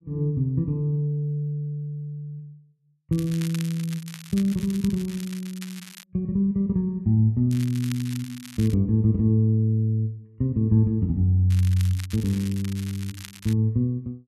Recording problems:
crackle; from 3 to 6 s, from 7.5 to 8.5 s and from 12 to 14 s; loose cable, SNR 17 dB

